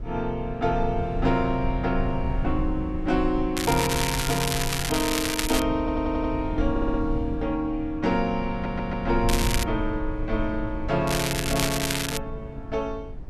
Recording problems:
low-frequency rumble; below 88 Hz, SNR 7 dB
crackle; from 3.5 to 5.5 s, at 9.5 s and from 11 to 12 s; loose cable, SNR 2 dB
audio stuttering; at 6 s, at 6.5 s and at 8.5 s

